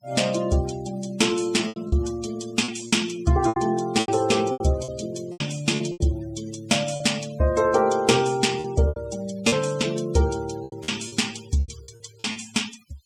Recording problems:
noise reduction artefacts; signal-to-artefact ratio 17 dB
lost packets; 10% of the sound replaced, filled with repeated pitch periods

